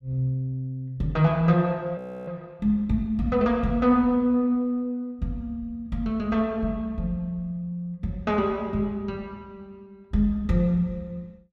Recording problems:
audio freezing; at 2 s

